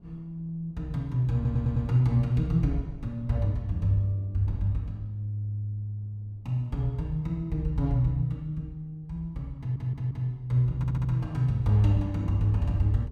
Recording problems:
wind on the microphone; below 130 Hz, SNR 24 dB
stutter; at 1.5 s, at 9.5 s and at 11 s

